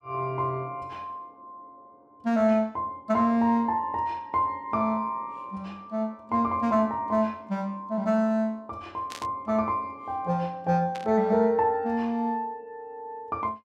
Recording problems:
static burst; at 9 s and at 11 s; peak -8 dB vs average level

